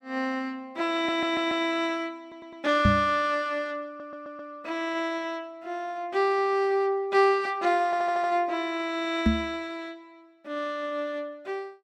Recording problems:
audio stuttering; 4 times, first at 1 s
microphone thump; at 3 s and at 9.5 s; peak +8 dB vs average level

